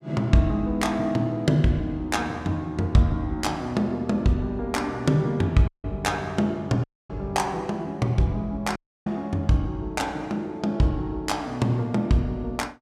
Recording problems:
dropout; at 5.5 s, at 7 s and at 9 s

